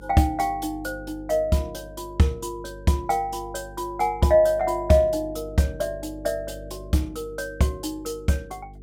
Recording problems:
hum; 50 Hz, harmonics up to 450 Hz, SNR 18 dB

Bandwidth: 16 kHz